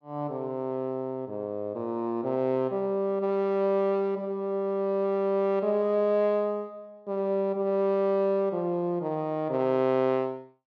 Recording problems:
none

